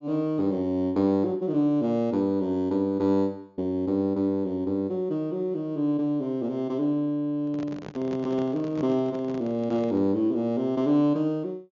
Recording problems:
treble missing; nothing above 7.1 kHz
handling noise; from 7.5 to 10 s; peak -8 dB vs average level

